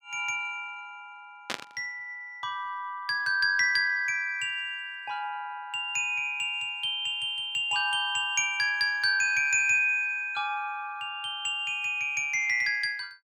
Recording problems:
burst of static; at 1.5 s; peak 0 dB vs average level

